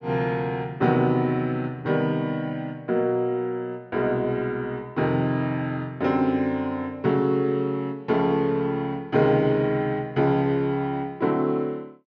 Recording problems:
treble cut off; nothing above 6.7 kHz

